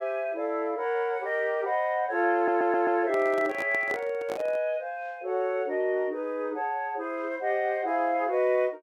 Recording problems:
stutter; at 2.5 s
microphone handling noise; from 3 to 4.5 s; peak -5 dB vs average level

